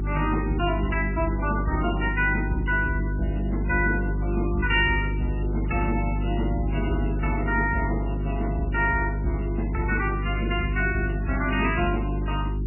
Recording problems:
codec artefacts; MP3, log-spectral distance 4 dB, nothing above 2.4 kHz
electrical hum; 50 Hz, harmonics up to 400 Hz, SNR 1 dB

